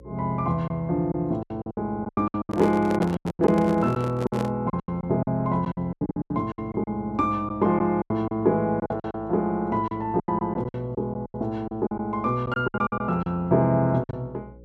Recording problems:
hum; 60 Hz, harmonics up to 540 Hz, SNR 23 dB
lost packets; 15% of the sound replaced, filled with silence
handling noise; from 2.5 to 4.5 s; peak -1 dB vs average level

